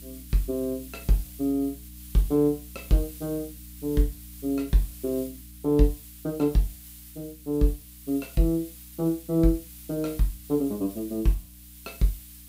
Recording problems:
hum; 60 Hz, harmonics up to 300 Hz, SNR 21 dB
background hiss; slope +5 dB per octave, SNR 17 dB

